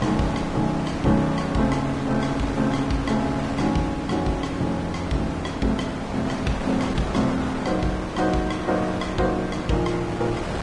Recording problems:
lossy compression; Vorbis, log-spectral distance 3 dB, nothing above 10.1 kHz
wind on the microphone; below 1.1 kHz, SNR 6 dB

